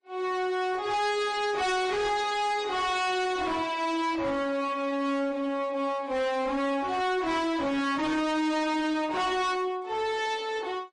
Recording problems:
lossy compression; AAC, then MP3, log-spectral distance 2 dB, nothing above 8.2 kHz
distortion; hard clipping, signal-to-distortion ratio 6 dB

